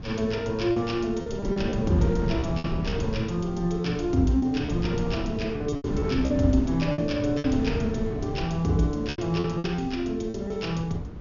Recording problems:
treble missing; nothing above 6.9 kHz
wind noise; below 220 Hz, SNR 7 dB
lost packets; 8% of the sound replaced, filled with repeated pitch periods

